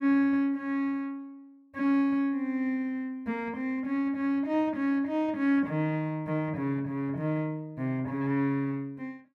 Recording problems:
none

